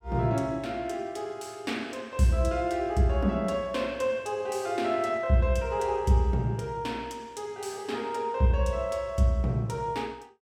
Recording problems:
none

